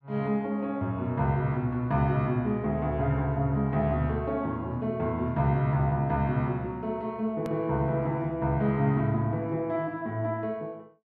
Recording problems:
edit click; at 7.5 s

